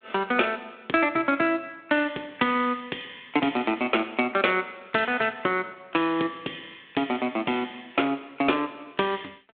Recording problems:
phone line; 220 Hz to 3.6 kHz, G.726

